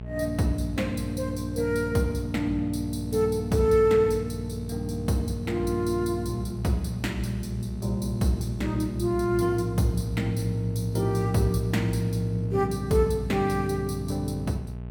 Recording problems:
hum; 60 Hz, harmonics up to 660 Hz, SNR 11 dB

